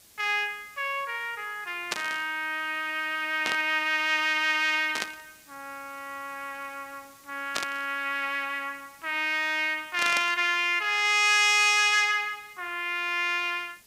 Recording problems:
hiss; SNR 27 dB
burst of static; 5 times, first at 2 s; peak +1 dB vs average level

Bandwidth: 15.5 kHz